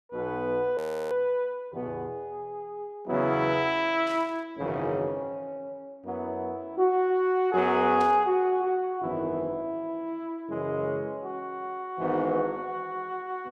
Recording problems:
audio freezing; at 1 s
static burst; at 4 s and at 8 s; peak -12 dB vs average level

